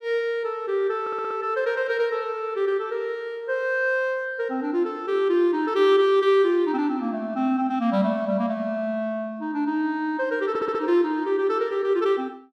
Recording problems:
stutter; at 1 s and at 10 s

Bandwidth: 13.5 kHz